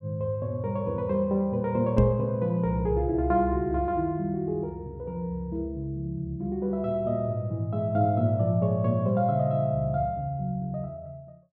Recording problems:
microphone bump; at 2 s; peak +7 dB vs average level

